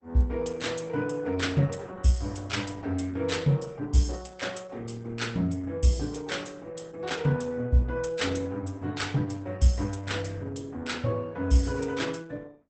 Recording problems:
lossy codec; Opus, log-spectral distance 4 dB, nothing above 8.2 kHz

